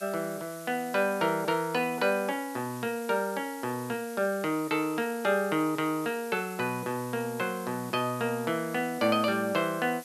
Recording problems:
hiss; slope +5 dB per octave, SNR 17 dB

